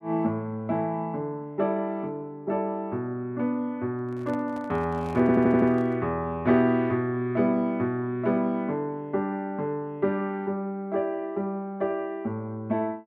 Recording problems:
microphone handling noise; from 4 to 6 s; peak -11 dB vs average level
stutter; at 5 s

